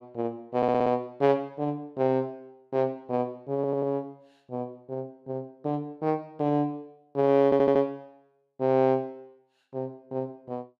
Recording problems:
stutter; at 0.5 s, at 3.5 s and at 7.5 s

